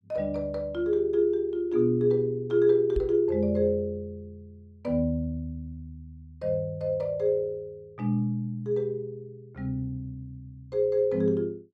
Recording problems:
microphone thump; at 3 s; peak -2 dB vs average level

